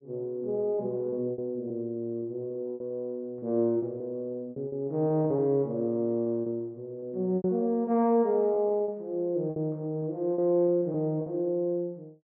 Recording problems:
lost packets; 9% of the sound replaced, filled with repeated pitch periods

